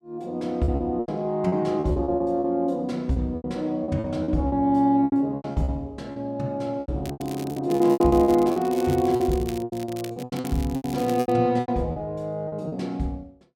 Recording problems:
packet loss; 16% of the sound replaced, filled with repeated pitch periods
crackling; at 7 s, from 7.5 to 10 s and from 10 to 11 s; loose cable, SNR 18 dB

